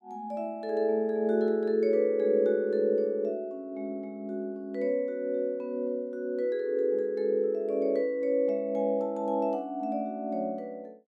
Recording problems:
none

